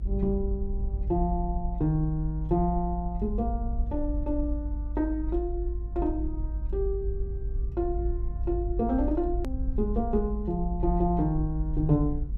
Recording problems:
rumble; below 54 Hz, strongest tone 52 Hz, SNR 3 dB
hard cut with a click; at 9.5 s

